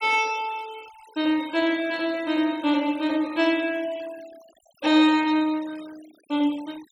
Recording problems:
denoising artefacts; signal-to-artefact ratio 22 dB

